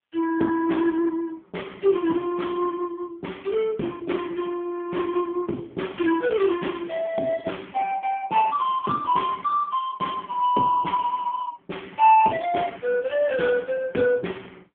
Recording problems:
phone line; 220 Hz to 3.2 kHz, AMR-NB

